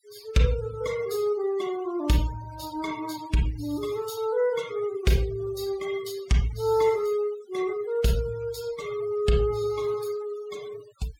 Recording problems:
denoising artefacts; signal-to-artefact ratio 18 dB

